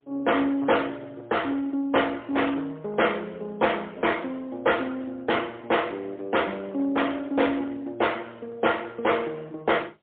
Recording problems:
phone line; 300 Hz to 3.5 kHz, AMR-NB, then MP3
distorted audio; hard clipping, uneven, signal-to-distortion ratio 16 dB

